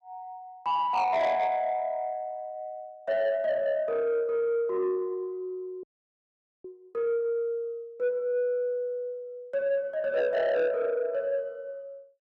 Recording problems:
distortion; soft clipping, signal-to-distortion ratio 11 dB
frozen audio; at 6 s for 1 s

